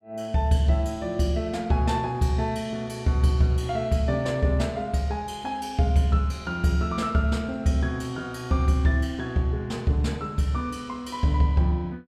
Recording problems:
none

